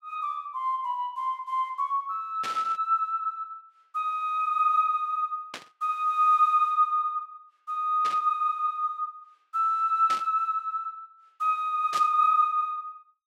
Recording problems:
burst of static; 5 times, first at 2.5 s; peak -5 dB vs average level

